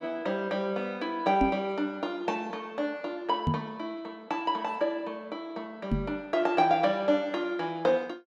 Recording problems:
knock on the microphone; at 1.5 s, at 3.5 s and at 6 s; peak +6 dB vs average level

